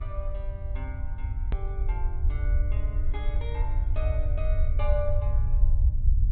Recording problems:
treble missing; nothing above 4 kHz
mains hum; 50 Hz, harmonics up to 900 Hz, SNR 14 dB
rumble; below 66 Hz, SNR -11 dB
edit click; at 1.5 s

